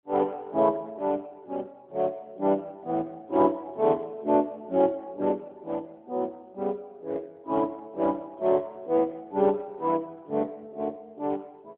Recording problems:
phone line; 220 Hz to 3.5 kHz, AMR-NB

